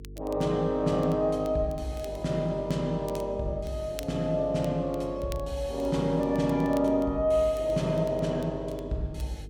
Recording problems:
hum; 50 Hz, harmonics up to 450 Hz, SNR 16 dB
crackle; vinyl, SNR 25 dB

